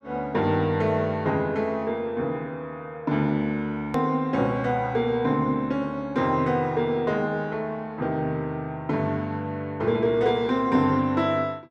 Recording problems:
hard cut with a click; at 4 s

